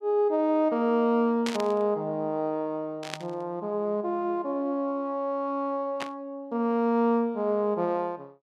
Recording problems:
static burst; at 1.5 s, at 3 s and at 6 s; peak -2 dB vs average level

